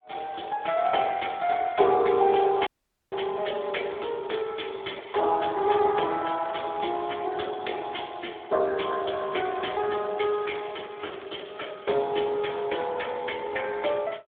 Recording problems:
telephone audio; 320 Hz to 3.5 kHz, Speex
dropout; at 2.5 s
crackling; at 3 s, at 6.5 s and from 9 to 12 s; loose cable, SNR 23 dB

